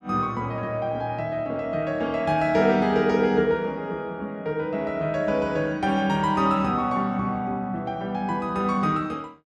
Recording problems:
none

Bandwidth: 12.5 kHz